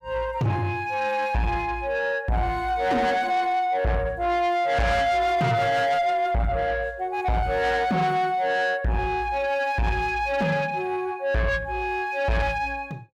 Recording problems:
distorted audio; soft clipping, signal-to-distortion ratio 7 dB

